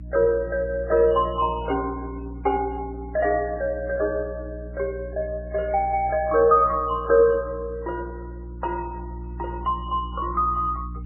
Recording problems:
codec artefacts; MP3, then MP3, log-spectral distance 2 dB, nothing above 2.9 kHz
hum; 60 Hz, harmonics up to 300 Hz, SNR 13 dB

